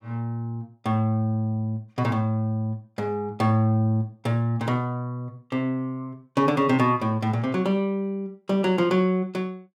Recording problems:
none

